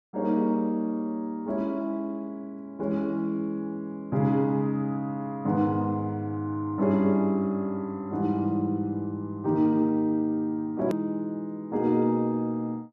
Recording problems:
click at an edit; at 11 s

